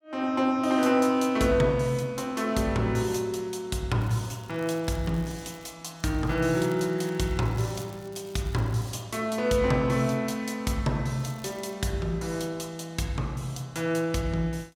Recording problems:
crackle; from 4 to 5.5 s, from 6 to 9 s and at 11 s; loose cable, SNR 25 dB

